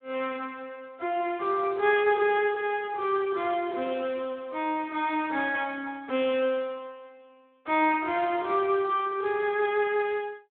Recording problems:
telephone audio; 300 Hz to 3.7 kHz, Speex

